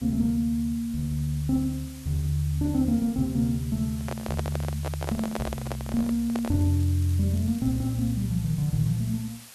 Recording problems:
background hiss; slope +1 dB per octave, SNR 18 dB
microphone handling noise; from 4 to 6.5 s; peak -1 dB vs average level
crackle; from 6 to 8 s; loose cable, SNR 27 dB

